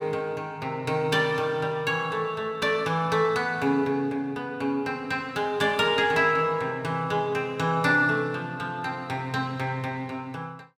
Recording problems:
none

